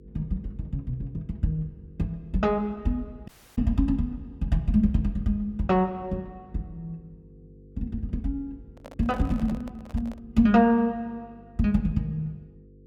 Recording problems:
electrical hum; 50 Hz, harmonics up to 500 Hz, SNR 25 dB
dropout; at 3.5 s
handling noise; from 8.5 to 10 s; peak -11 dB vs average level

